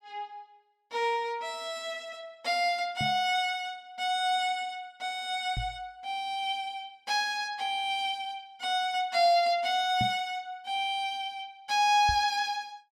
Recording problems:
microphone bump; 4 times, first at 3 s; peak 0 dB vs average level

